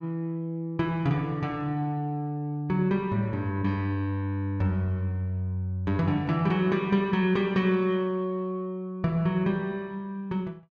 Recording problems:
none

